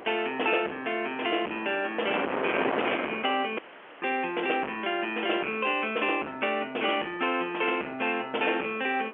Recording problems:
phone line; 280 Hz to 3.3 kHz, G.711
distorted audio; hard clipping, uneven, signal-to-distortion ratio 9 dB
wind noise; below 1.4 kHz, SNR 6 dB
audio cutting out; at 3.5 s

